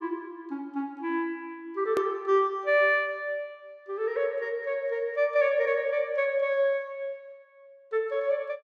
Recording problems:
hard cut with a click; at 2 s

